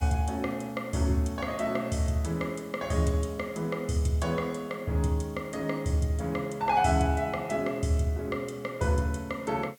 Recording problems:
background hiss; SNR 27 dB

